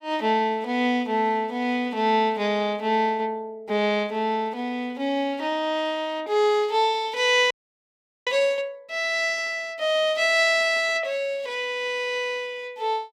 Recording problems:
frozen audio; at 7.5 s for 1 s

